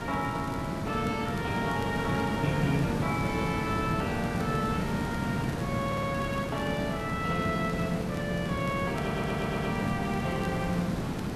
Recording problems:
hiss; slope -6 dB per octave, SNR 0 dB
crackling; vinyl, SNR 23 dB
stutter; at 6 s and at 9 s

